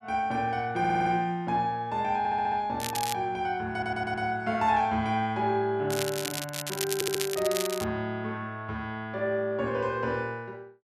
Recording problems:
stutter; 4 times, first at 1 s
crackling; at 3 s and from 6 to 8 s; loose cable, SNR 5 dB

